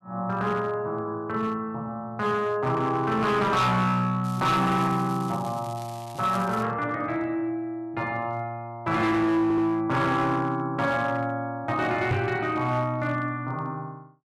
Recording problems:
distorted audio; hard clipping, uneven, signal-to-distortion ratio 11 dB
crackling; from 4 to 6.5 s; loose cable, SNR 21 dB
audio stuttering; at 9.5 s
microphone bump; at 12 s; peak +4 dB vs average level

